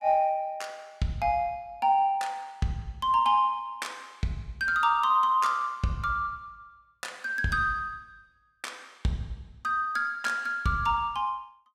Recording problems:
none

